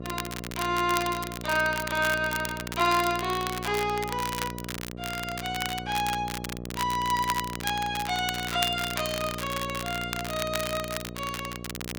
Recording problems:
hum; 60 Hz, harmonics up to 780 Hz, SNR 10 dB
crackling; vinyl, SNR 7 dB

